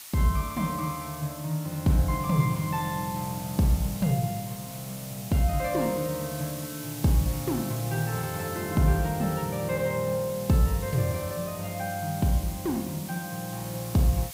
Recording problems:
background hiss; slope +3 dB per octave, SNR 12 dB

